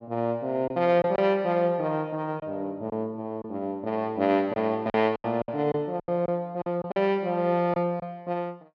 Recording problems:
lost packets; 7% of the sound replaced, filled with silence

